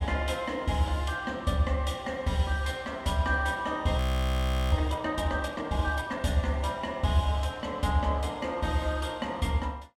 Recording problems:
frozen audio; at 4 s for 0.5 s

